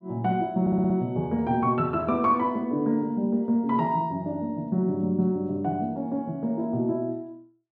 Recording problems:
stutter; at 0.5 s

